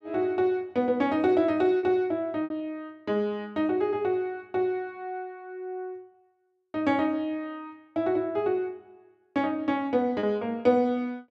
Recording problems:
packet loss; 1.8% of the sound replaced, filled with repeated pitch periods

